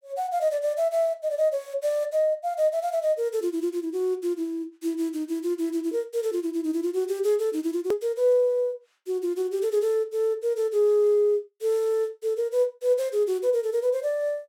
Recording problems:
click at an edit; at 8 s

